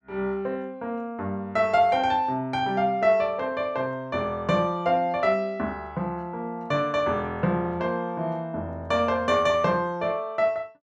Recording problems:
none

